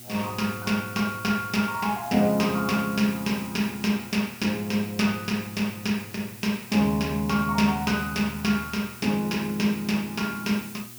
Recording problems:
hum; 60 Hz, harmonics up to 1.1 kHz, SNR 23 dB
background hiss; slope +2 dB per octave, SNR 16 dB

